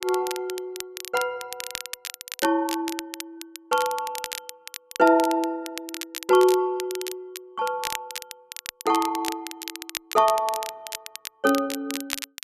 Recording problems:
crackling; vinyl, SNR 10 dB

